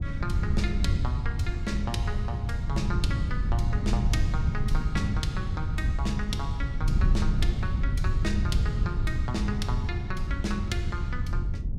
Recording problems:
wind on the microphone; below 100 Hz, SNR -5 dB

